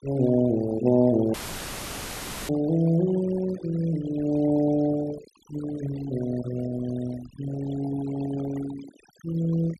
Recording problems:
noise reduction artefacts; signal-to-artefact ratio 14 dB
dropout; at 1.5 s for 1 s; filled with static

